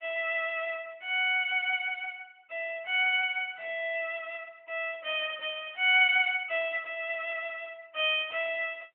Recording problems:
telephone audio; 280 Hz to 3.3 kHz, AMR-NB

